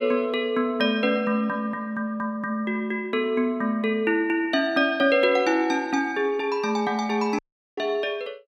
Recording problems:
audio cutting out; at 7.5 s

